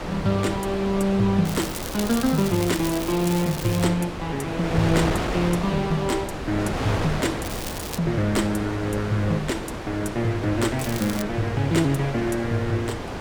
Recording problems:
wind noise; below 1.1 kHz, SNR 6 dB
crackle; from 1.5 to 4 s, at 7.5 s and at 11 s; loose cable, SNR 10 dB

